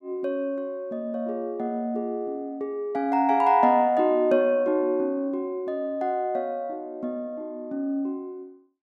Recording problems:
none

